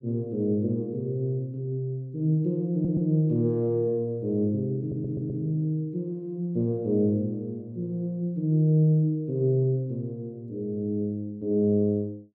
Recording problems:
stutter; at 2.5 s and at 5 s

